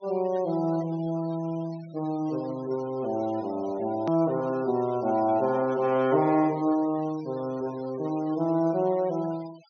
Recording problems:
treble cut off; nothing above 6.3 kHz
noise reduction artefacts; signal-to-artefact ratio 22 dB
click at an edit; at 4 s

